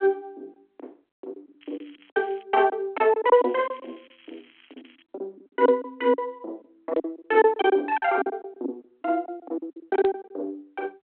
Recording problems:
phone line; 260 Hz to 3.4 kHz, G.726
packet loss; 12% of the sound replaced, filled with silence
crackle; at 1.5 s and from 3.5 to 5 s; loose cable, SNR 30 dB

